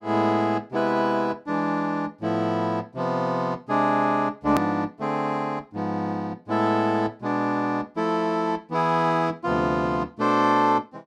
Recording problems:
click at an edit; at 4.5 s

